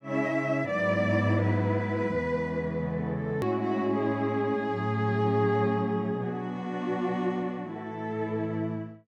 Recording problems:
hard cut with a click; at 3.5 s

